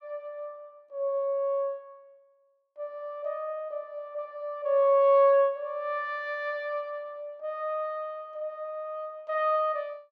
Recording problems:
none

